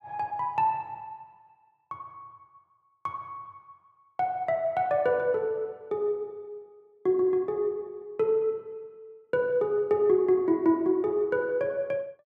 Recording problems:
none

